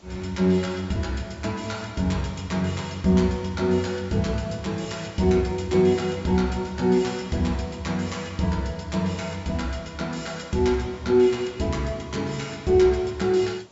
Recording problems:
treble missing; nothing above 8 kHz
hiss; SNR 27 dB

